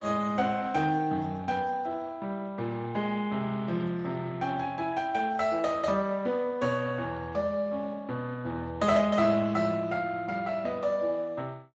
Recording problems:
codec artefacts; Speex, log-spectral distance 3 dB, nothing above 7.3 kHz

